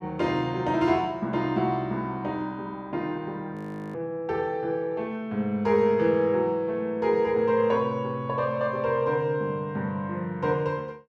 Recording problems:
frozen audio; at 3.5 s

